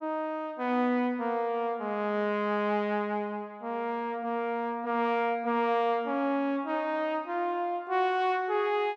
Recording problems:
none

